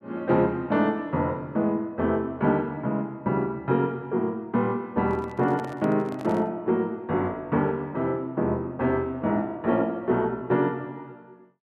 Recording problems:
microphone handling noise; from 5 to 6.5 s; peak -10 dB vs average level

